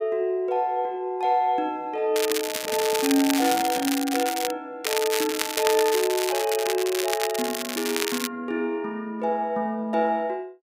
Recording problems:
crackling; from 2 to 4.5 s and from 5 to 8.5 s; loose cable, SNR 4 dB
microphone handling noise; from 2.5 to 4 s; peak -9 dB vs average level

